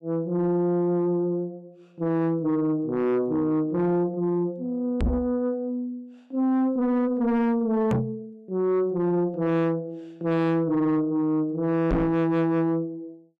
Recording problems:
distortion; soft clipping, signal-to-distortion ratio 7 dB
microphone bump; at 5 s, at 8 s and at 12 s; peak +5 dB vs average level

